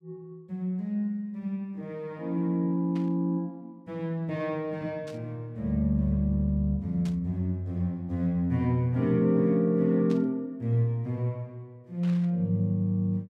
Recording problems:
static burst; 5 times, first at 3 s; peak -14 dB vs average level

